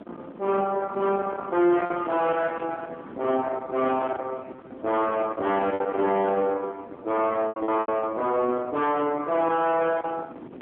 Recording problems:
telephone audio; 220 Hz to 3.4 kHz, AMR-NB
distortion; soft clipping, signal-to-distortion ratio 5 dB
wind noise; below 980 Hz, SNR 13 dB
lost packets; 3% of the sound replaced, filled with repeated pitch periods

